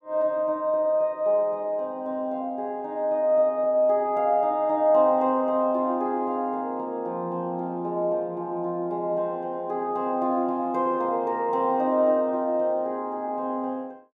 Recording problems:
none

